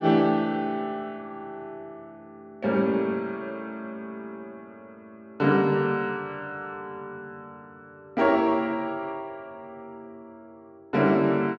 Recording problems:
none

